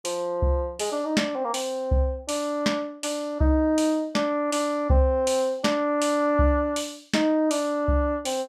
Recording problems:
none

